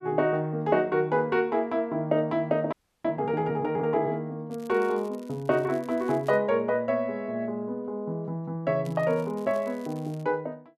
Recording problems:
audio freezing; at 2.5 s
crackling; from 4.5 to 6.5 s and from 9 to 10 s; loose cable, SNR 27 dB

